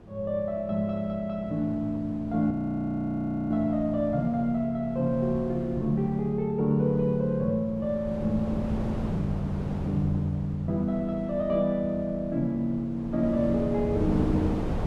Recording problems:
wind on the microphone; below 350 Hz, SNR 10 dB
audio freezing; at 2.5 s for 1 s

